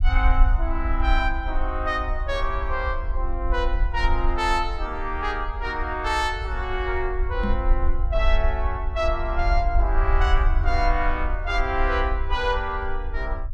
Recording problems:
low-frequency rumble; below 52 Hz, SNR 1 dB
microphone thump; at 7.5 s; peak +1 dB vs average level

